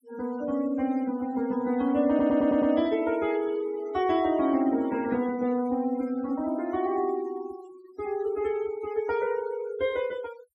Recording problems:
denoising artefacts; signal-to-artefact ratio 19 dB
audio stuttering; at 2 s

